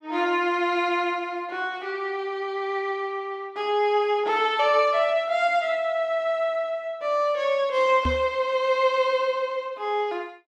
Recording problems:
microphone thump; at 8 s; peak 0 dB vs average level

